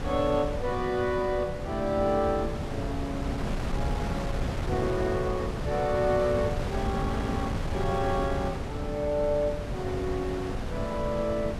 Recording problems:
wind on the microphone; below 410 Hz, SNR 3 dB

